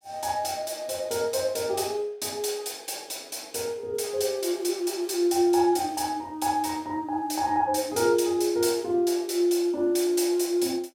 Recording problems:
none

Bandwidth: 16 kHz